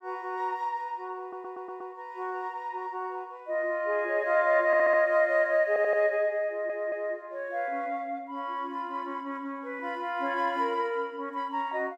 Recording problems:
audio stuttering; 4 times, first at 1 s

